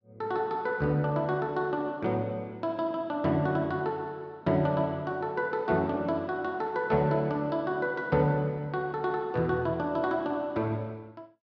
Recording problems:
none

